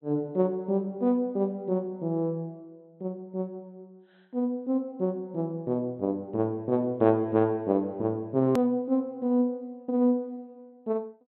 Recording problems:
treble cut off; nothing above 4 kHz
hard cut with a click; at 8.5 s

